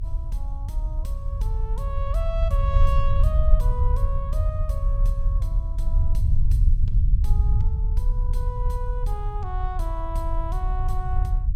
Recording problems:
low-frequency rumble; below 66 Hz, SNR -10 dB

